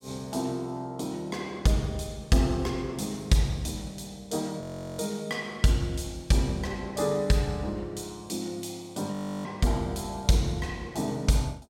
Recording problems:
frozen audio; at 4.5 s and at 9 s

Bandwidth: 16 kHz